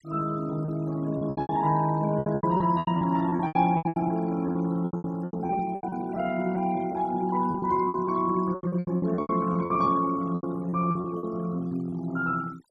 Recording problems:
noise reduction artefacts; signal-to-artefact ratio 21 dB
lost packets; 17% of the sound replaced, filled with repeated pitch periods

